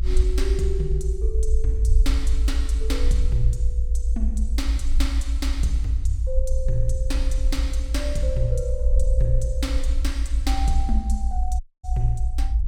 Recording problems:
rumble; below 58 Hz, strongest tone 20 Hz, SNR -6 dB
audio cutting out; at 12 s

